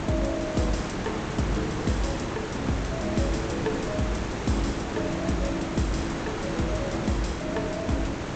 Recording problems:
lossy compression; G.722, log-spectral distance 7 dB, nothing above 7.8 kHz
hum; 60 Hz, harmonics up to 480 Hz, SNR 23 dB
hiss; slope -6 dB per octave, SNR 2 dB

